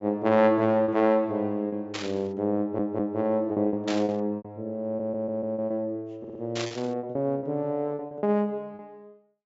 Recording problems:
treble cut off; nothing above 8 kHz
packet loss; 9% of the sound replaced, filled with repeated pitch periods
burst of static; at 2 s, at 4 s and at 6.5 s; peak -2 dB vs average level
stutter; at 2.5 s, at 5 s and at 6 s

